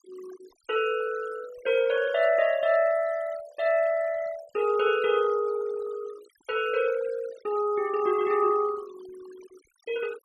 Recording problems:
denoising artefacts; signal-to-artefact ratio 21 dB

